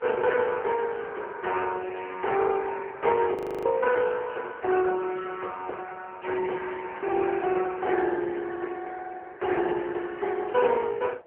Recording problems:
phone line; 300 Hz to 3.1 kHz, AMR-NB
wind noise; below 710 Hz, SNR 24 dB
frozen audio; at 3.5 s

